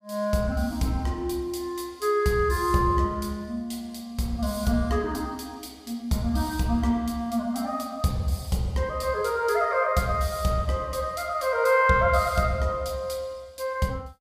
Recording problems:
none

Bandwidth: 15.5 kHz